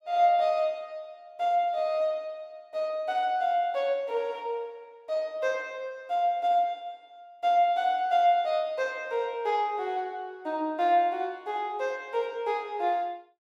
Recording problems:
none

